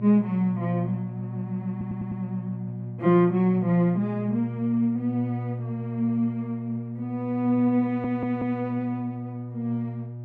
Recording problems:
hum; 60 Hz, harmonics up to 600 Hz, SNR 9 dB
audio stuttering; at 1.5 s and at 8 s

